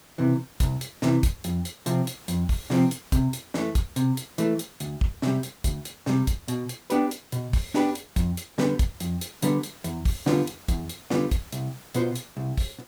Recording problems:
background hiss; slope -3 dB per octave, SNR 22 dB

